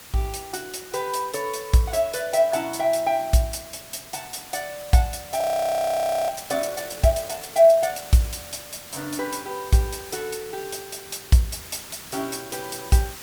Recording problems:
hiss; slope -1 dB per octave, SNR 15 dB
audio freezing; at 5.5 s for 1 s

